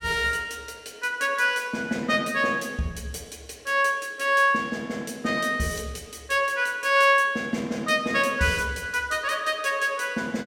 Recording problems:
none

